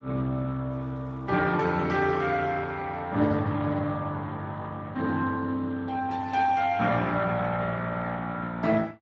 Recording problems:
lossy compression; Speex, log-spectral distance 3 dB

